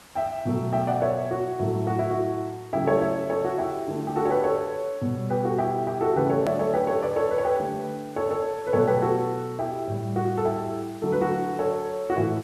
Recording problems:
hiss; SNR 24 dB
edit click; at 6.5 s

